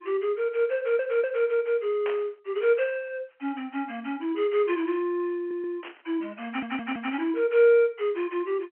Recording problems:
telephone audio; 240 Hz to 3.2 kHz, G.711
audio stuttering; at 1 s, at 5.5 s and at 6.5 s
static burst; at 2 s and at 6 s; peak -5 dB vs average level

